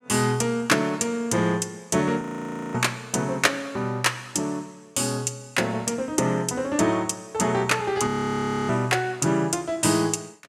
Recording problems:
frozen audio; at 2 s for 0.5 s and at 8 s for 0.5 s

